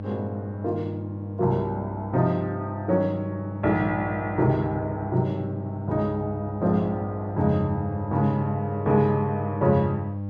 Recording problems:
hum; 50 Hz, harmonics up to 800 Hz, SNR 7 dB

